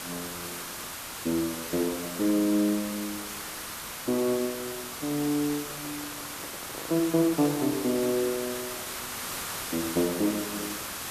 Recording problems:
background hiss; SNR 6 dB
microphone handling noise; from 5.5 to 8 s; peak -9 dB vs average level

